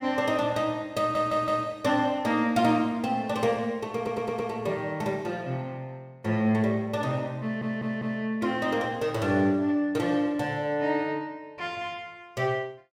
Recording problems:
audio stuttering; at 1 s, at 4 s and at 7.5 s

